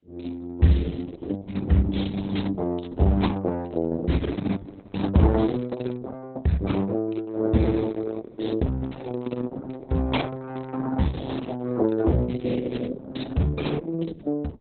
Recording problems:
lossy codec; Opus, then Opus, log-spectral distance 4 dB, nothing above 4 kHz

